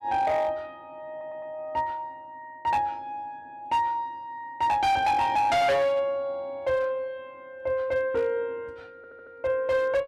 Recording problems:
distortion; hard clipping, signal-to-distortion ratio 10 dB
stutter; at 1 s and at 9 s

